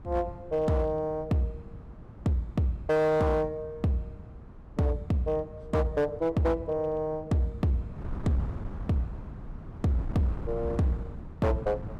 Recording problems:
distorted audio; hard clipping, signal-to-distortion ratio 12 dB
wind noise; below 180 Hz, SNR 13 dB

